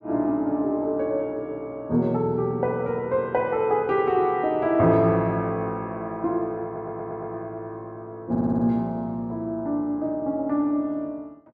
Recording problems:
audio stuttering; at 6.5 s and at 8.5 s

